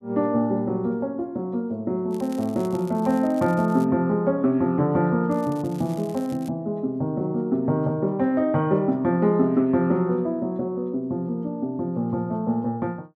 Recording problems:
crackling; from 2 to 4 s and from 5.5 to 6.5 s; loose cable, SNR 25 dB

